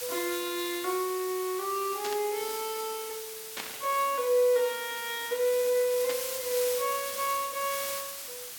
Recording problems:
background hiss; slope +2 dB per octave, SNR 6 dB
static burst; at 2 s, at 3.5 s and at 6 s; peak -3 dB vs average level

